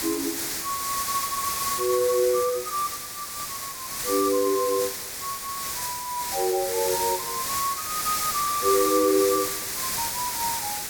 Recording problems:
codec artefacts; Speex, then AAC, log-spectral distance 2 dB
hiss; SNR 2 dB

